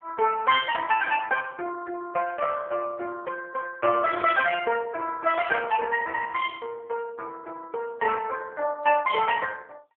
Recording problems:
telephone audio; 370 Hz to 3.1 kHz, AMR-NB

